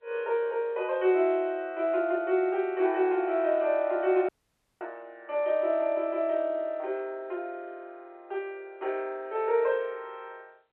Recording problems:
phone line; 320 Hz to 3.4 kHz, G.711
dropout; at 4.5 s for 0.5 s

